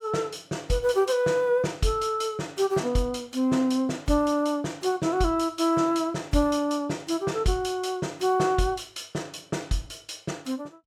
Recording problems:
none

